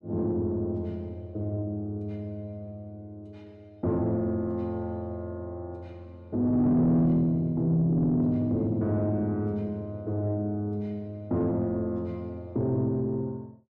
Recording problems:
distortion; soft clipping, signal-to-distortion ratio 10 dB

